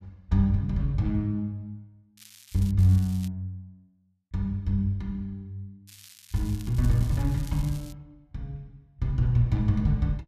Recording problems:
crackling; at 2 s, at 3 s and from 6 to 8 s; loose cable, SNR 21 dB

